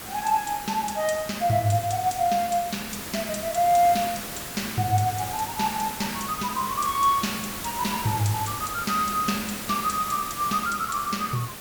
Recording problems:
hiss; slope -2 dB per octave, SNR 8 dB

